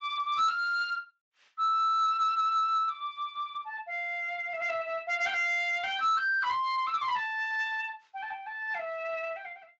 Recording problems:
codec artefacts; Speex, log-spectral distance 2 dB, nothing above 6.5 kHz
distorted audio; soft clipping, signal-to-distortion ratio 12 dB

